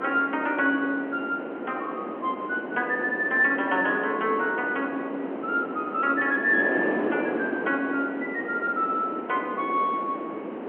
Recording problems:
phone line; 240 Hz to 3.2 kHz, G.711
wind noise; below 670 Hz, SNR 6 dB

